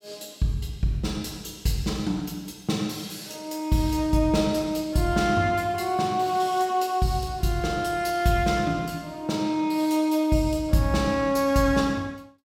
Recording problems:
none

